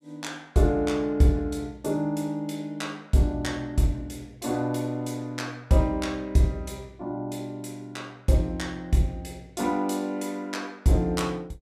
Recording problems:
none

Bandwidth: 15.5 kHz